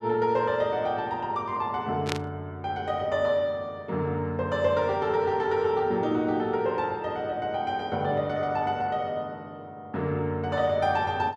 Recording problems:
static burst; at 2 s; peak +1 dB vs average level

